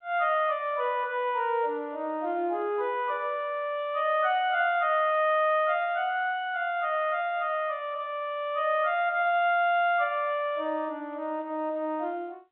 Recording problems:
telephone audio; 320 Hz to 3.7 kHz, G.711

